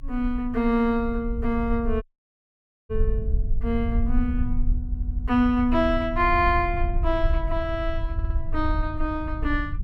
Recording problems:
rumble; below 64 Hz, SNR 4 dB
dropout; at 2 s for 1 s
audio stuttering; at 5 s and at 8 s

